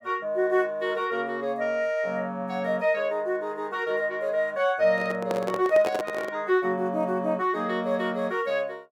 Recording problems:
handling noise; from 5 to 6.5 s; peak -1 dB vs average level

